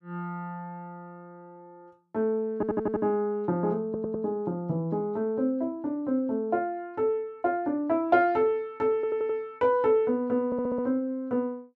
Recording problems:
stutter; 4 times, first at 2.5 s

